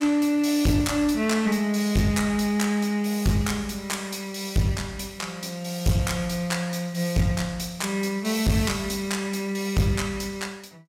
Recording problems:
distorted audio; hard clipping, uneven, signal-to-distortion ratio 10 dB

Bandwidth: 16 kHz